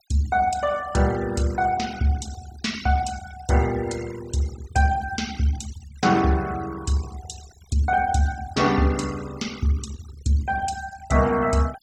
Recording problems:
noise reduction artefacts; signal-to-artefact ratio 16 dB

